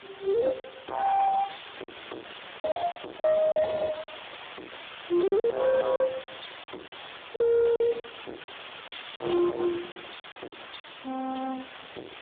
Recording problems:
telephone audio; 280 Hz to 2 kHz, Speex
distorted audio; hard clipping, signal-to-distortion ratio 3 dB
background hiss; SNR 15 dB
packet loss; 9% of the sound replaced, filled with silence
crackling; at 9 s; loose cable, SNR 18 dB

